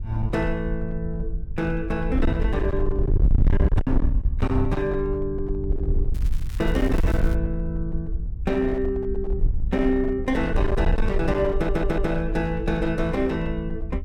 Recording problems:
distortion; hard clipping, uneven, signal-to-distortion ratio 5 dB
wind on the microphone; below 66 Hz, SNR 2 dB
crackle; from 6 to 7.5 s; loose cable, SNR 20 dB
audio stuttering; at 12 s

